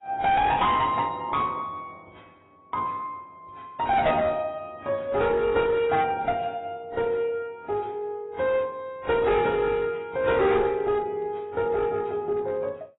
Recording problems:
codec artefacts; AAC, then AAC, log-spectral distance 2 dB, nothing above 3.8 kHz
distortion; hard clipping, uneven, signal-to-distortion ratio 10 dB

